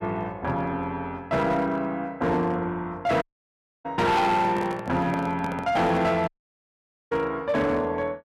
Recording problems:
distortion; hard clipping, signal-to-distortion ratio 10 dB
audio cutting out; at 3 s for 0.5 s and at 6.5 s for 1 s
microphone handling noise; from 4.5 to 6.5 s; peak -5 dB vs average level

